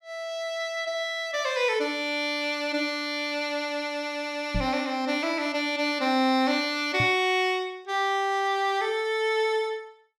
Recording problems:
microphone bump; at 4.5 s and at 7 s; peak +1 dB vs average level

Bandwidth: 16.5 kHz